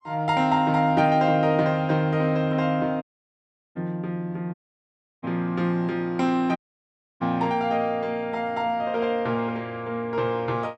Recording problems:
dropout; at 3 s for 0.5 s, at 4.5 s for 0.5 s and at 6.5 s for 0.5 s

